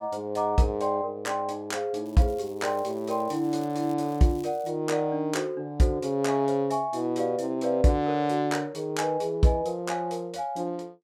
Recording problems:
crackling; from 2 to 4 s and at 4 s; loose cable, SNR 27 dB

